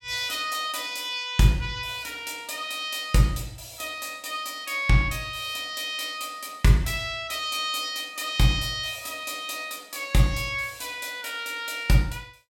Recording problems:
none

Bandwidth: 17 kHz